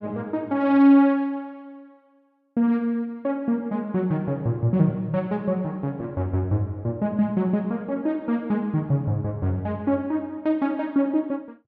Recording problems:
none

